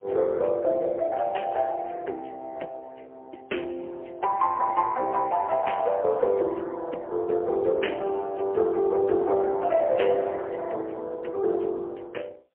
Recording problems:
phone line; 280 Hz to 3.1 kHz, AMR-NB, then MP3

